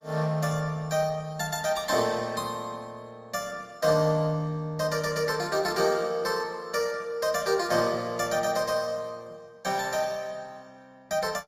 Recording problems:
codec artefacts; Opus, log-spectral distance 3 dB, nothing above 15.5 kHz

